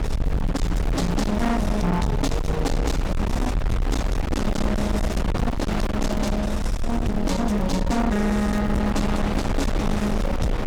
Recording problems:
distortion; soft clipping, signal-to-distortion ratio 6 dB
low-frequency rumble; below 160 Hz, SNR 2 dB
wind on the microphone; below 910 Hz, SNR 4 dB
crackle; vinyl, SNR 27 dB

